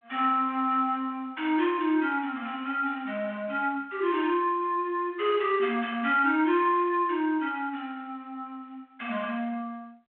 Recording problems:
telephone audio; 300 Hz to 3.4 kHz, G.726

